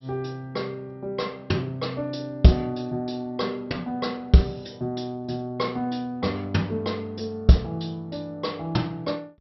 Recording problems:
treble cut off; nothing above 5.6 kHz

